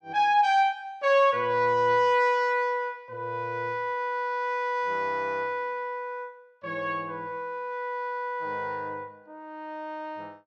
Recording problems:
none

